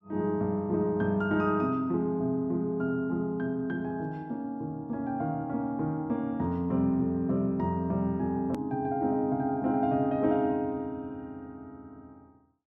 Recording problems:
hard cut with a click; at 8.5 s

